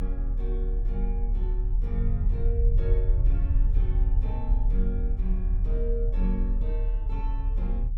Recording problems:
low-frequency rumble; below 48 Hz, strongest tone 36 Hz, SNR -10 dB

